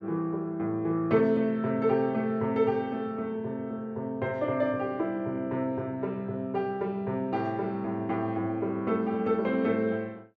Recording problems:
none

